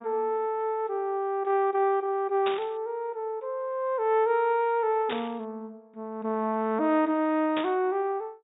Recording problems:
treble missing; nothing above 4 kHz
burst of static; at 2.5 s, at 5 s and at 7.5 s; peak -3 dB vs average level

